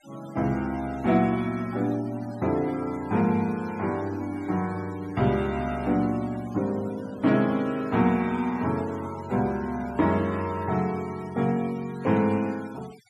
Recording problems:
denoising artefacts; signal-to-artefact ratio 21 dB

